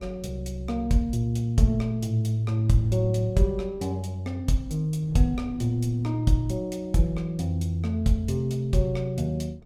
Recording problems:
wind on the microphone; below 170 Hz, SNR 21 dB

